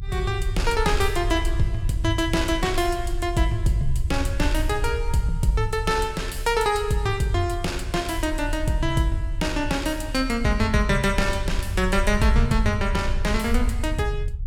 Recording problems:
rumble; below 70 Hz, SNR 5 dB

